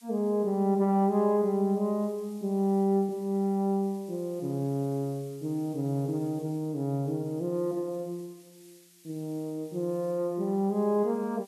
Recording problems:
background hiss; slope +5 dB per octave, SNR 27 dB

